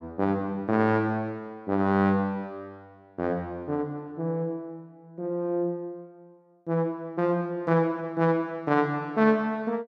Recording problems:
none

